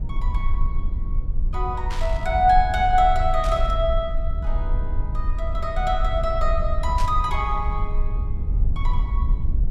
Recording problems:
low-frequency rumble; below 56 Hz, SNR 3 dB
burst of static; at 2 s, at 3.5 s and at 7 s; peak -8 dB vs average level

